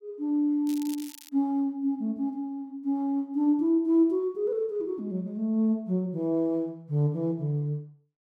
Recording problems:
crackle; at 0.5 s; loose cable, SNR 17 dB

